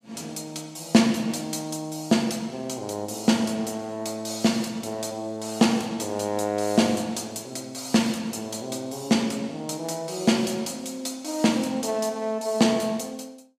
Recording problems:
none

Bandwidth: 15.5 kHz